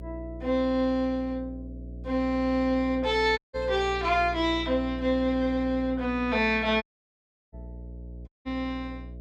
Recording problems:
hum; 60 Hz, harmonics up to 660 Hz, SNR 14 dB
dropout; at 3.5 s, at 7 s for 0.5 s and at 8.5 s

